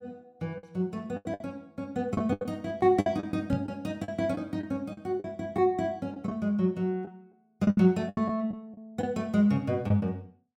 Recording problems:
lost packets; 11% of the sound replaced, filled with the last packet
microphone thump; at 3.5 s; peak +4 dB vs average level

